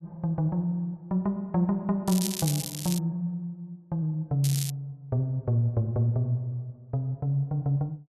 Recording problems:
crackling; at 2 s and at 4.5 s; loose cable, SNR 6 dB

